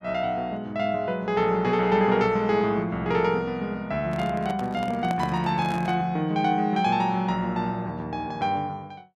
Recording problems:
microphone handling noise; from 4 to 6 s; peak -4 dB vs average level

